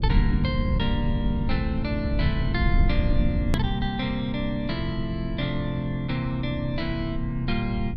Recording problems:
rumble; below 100 Hz, SNR 2 dB
hard cut with a click; at 3.5 s

